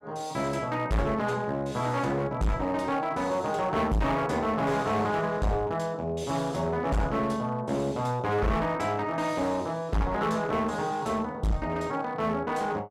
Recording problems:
distorted audio; hard clipping, uneven, signal-to-distortion ratio 6 dB

